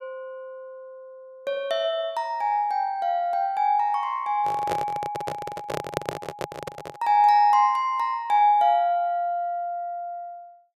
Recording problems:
handling noise; from 4.5 to 7 s; peak +1 dB vs average level

